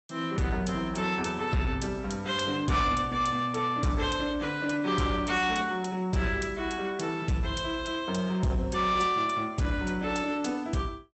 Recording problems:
treble cut off; nothing above 8 kHz
lossy compression; AAC, log-spectral distance 3 dB
distortion; soft clipping, signal-to-distortion ratio 12 dB

